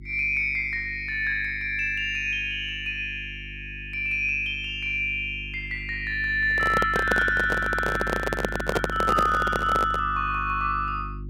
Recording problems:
hum; 50 Hz, harmonics up to 350 Hz, SNR 14 dB
microphone handling noise; from 6.5 to 10 s; peak +4 dB vs average level

